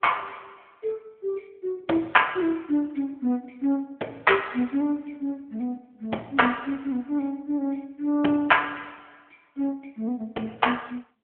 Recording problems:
telephone audio; 170 Hz to 3.3 kHz, AMR-NB

